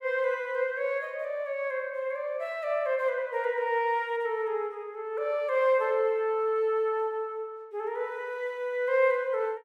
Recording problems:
none

